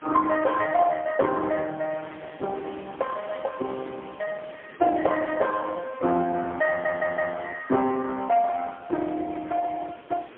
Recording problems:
telephone audio; 220 Hz to 3.1 kHz, AMR-NB, then MP3
wind noise; below 2.2 kHz, SNR 21 dB
audio stuttering; at 6.5 s

